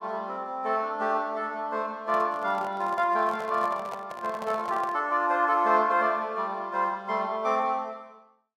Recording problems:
handling noise; from 2 to 5 s; peak -7 dB vs average level

